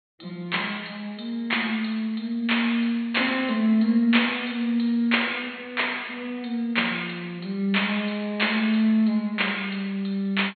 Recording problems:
treble missing; nothing above 4.3 kHz

